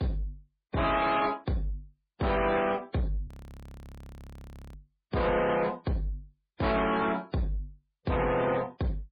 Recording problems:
codec artefacts; MP3, then MP3, log-spectral distance 3 dB, nothing above 18.3 kHz
distorted audio; soft clipping, signal-to-distortion ratio 8 dB
audio freezing; at 3.5 s for 1.5 s

